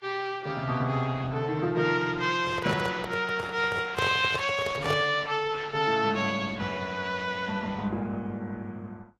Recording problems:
lossy codec; Opus, then Vorbis, log-spectral distance 4 dB
microphone handling noise; from 2.5 to 5 s; peak 0 dB vs average level

